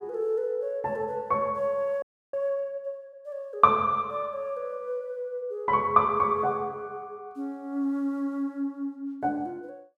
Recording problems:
audio freezing; at 2 s

